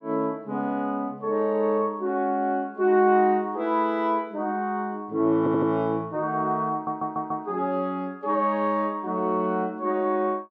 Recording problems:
stutter; at 5.5 s and at 6.5 s

